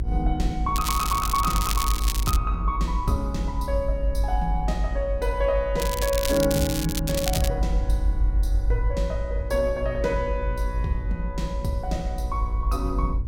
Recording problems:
hum; 60 Hz, harmonics up to 1 kHz, SNR 15 dB
rumble; below 54 Hz, strongest tone 46 Hz, SNR 1 dB
crackle; from 1 to 2.5 s and from 6 to 7.5 s; loose cable, SNR 3 dB

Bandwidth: 16.5 kHz